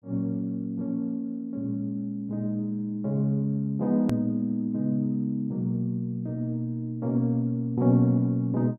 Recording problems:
click at an edit; at 4 s

